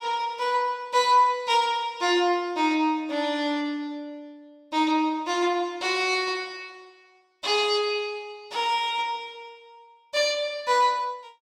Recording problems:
none

